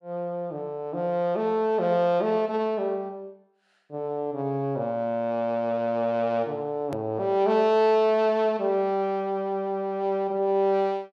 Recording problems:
hard cut with a click; at 7 s

